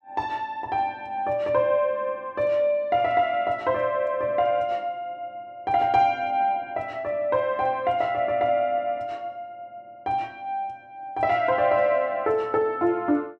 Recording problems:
none

